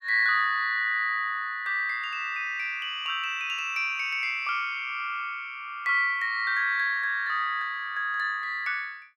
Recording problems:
none

